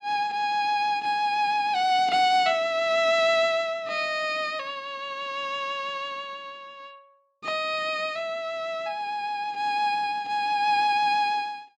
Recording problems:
none

